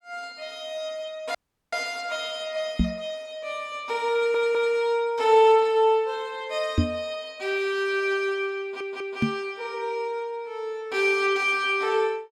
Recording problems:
audio cutting out; at 1.5 s
microphone thump; at 3 s, at 7 s and at 9 s; peak +7 dB vs average level
audio stuttering; at 4 s and at 8.5 s

